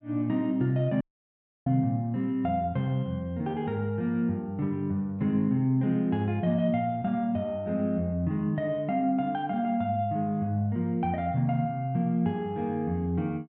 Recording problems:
audio cutting out; at 1 s for 0.5 s

